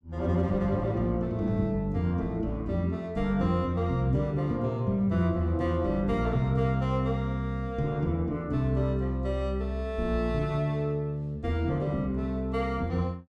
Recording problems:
none

